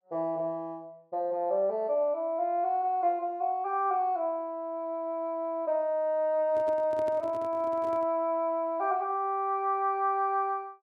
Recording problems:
handling noise; from 6.5 to 8 s; peak -10 dB vs average level

